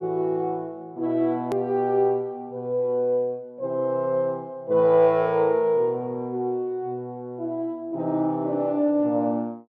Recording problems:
hard cut with a click; at 1.5 s

